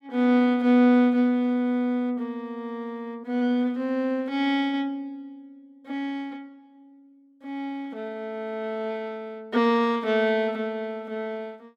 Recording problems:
none

